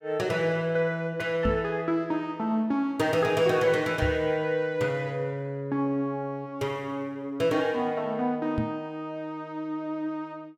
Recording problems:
knock on the microphone; at 1.5 s, at 4 s and at 8.5 s; peak +3 dB vs average level

